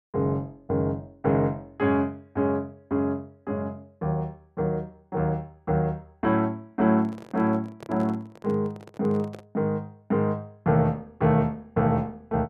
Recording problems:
handling noise; from 7 to 9.5 s; peak -11 dB vs average level

